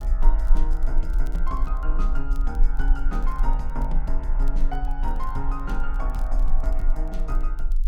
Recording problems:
rumble; below 34 Hz, strongest tone 20 Hz, SNR -7 dB
crackling; vinyl, SNR 24 dB

